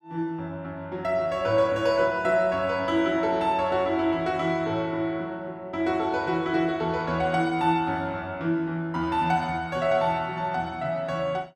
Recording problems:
none

